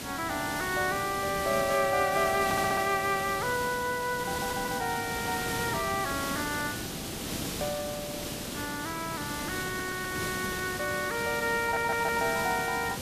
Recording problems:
background hiss; SNR 5 dB
stutter; 4 times, first at 2.5 s

